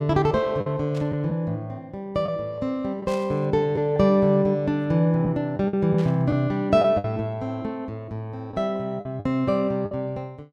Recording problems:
packet loss; 4% of the sound replaced, filled with the last packet
burst of static; at 1 s, at 3 s and at 6 s; peak -13 dB vs average level

